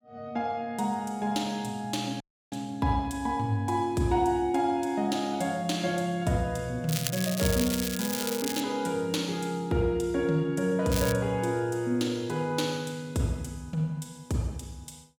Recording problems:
dropout; at 2 s
crackle; from 7 to 8.5 s and at 11 s; loose cable, SNR 4 dB

